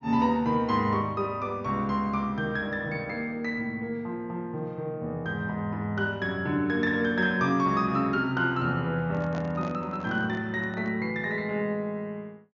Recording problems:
treble cut off; nothing above 7 kHz
microphone handling noise; from 9 to 11 s; peak -7 dB vs average level

